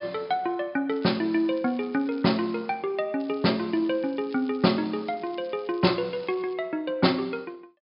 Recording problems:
treble missing; nothing above 5.5 kHz
crackle; from 1 to 2.5 s and from 3 to 6.5 s; loose cable, SNR 27 dB

